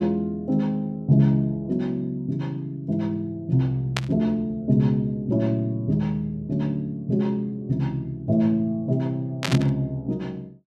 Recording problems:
static burst; at 4 s and at 9.5 s; peak +3 dB vs average level

